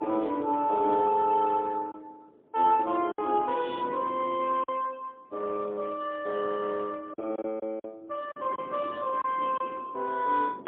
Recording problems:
telephone audio; 260 Hz to 3.5 kHz, AMR-NB, then MP3
wind on the microphone; below 510 Hz, SNR 18 dB
lost packets; 4% of the sound replaced, filled with silence

